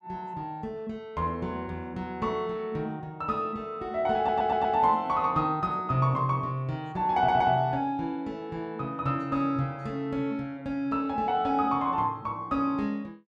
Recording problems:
audio stuttering; at 4 s and at 7 s

